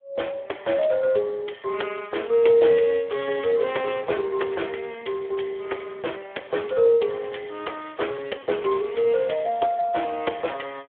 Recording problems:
phone line; 340 Hz to 3.4 kHz, Speex

